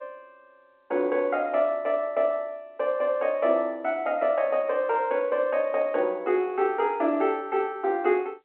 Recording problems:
telephone audio; 220 Hz to 3.3 kHz, G.711

